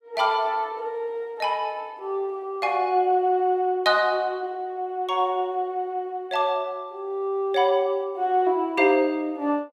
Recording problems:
none

